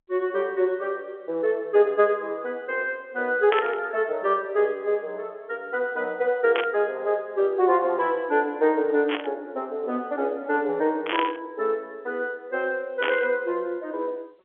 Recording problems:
phone line; 300 Hz to 3.9 kHz, G.711
static burst; 5 times, first at 3.5 s; peak +2 dB vs average level

